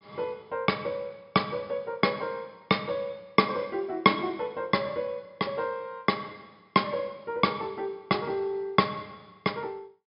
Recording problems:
low-pass filter; nothing above 5.5 kHz

